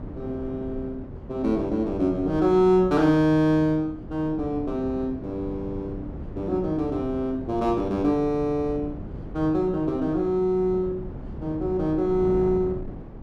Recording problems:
wind noise; below 280 Hz, SNR 13 dB

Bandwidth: 13.5 kHz